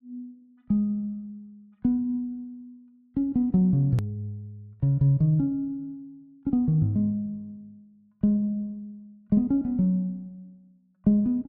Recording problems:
edit click; at 4 s

